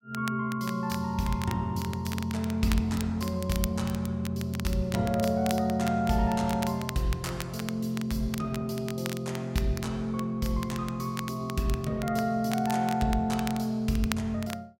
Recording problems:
crackle; vinyl, SNR 13 dB

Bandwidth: 16 kHz